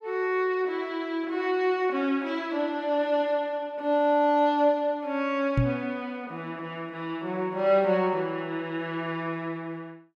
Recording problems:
microphone bump; at 5.5 s; peak +6 dB vs average level

